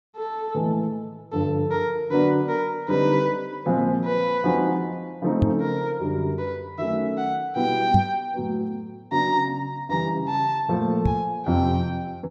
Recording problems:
knock on the microphone; at 5.5 s, at 8 s and at 11 s; peak +7 dB vs average level

